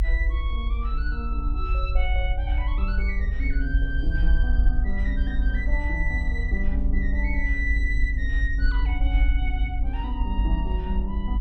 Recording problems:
rumble; below 52 Hz, SNR -6 dB

